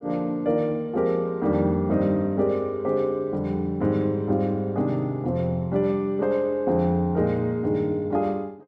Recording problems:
none

